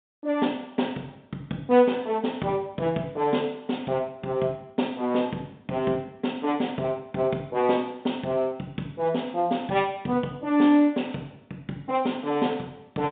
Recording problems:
telephone audio; 110 Hz to 3.7 kHz, G.711

